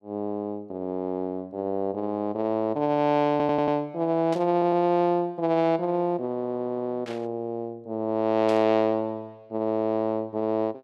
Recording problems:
stutter; at 3.5 s, at 4.5 s and at 6.5 s
static burst; at 4.5 s, at 7 s and at 8.5 s; peak -10 dB vs average level

